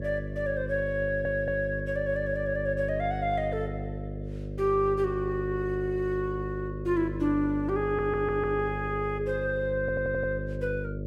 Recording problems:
hum; 50 Hz, harmonics up to 600 Hz, SNR 6 dB
stutter; at 1 s, at 8 s and at 10 s

